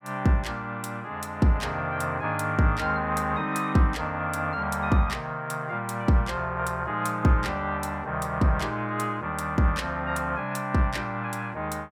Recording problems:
none

